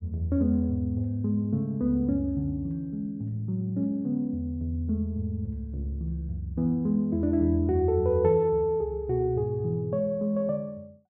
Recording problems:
none

